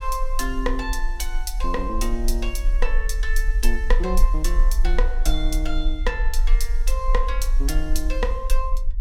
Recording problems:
low-frequency rumble; below 38 Hz, strongest tone 20 Hz, SNR -3 dB

